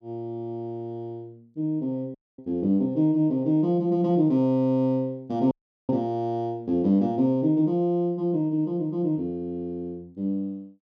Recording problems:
audio cutting out; at 2 s and at 5.5 s

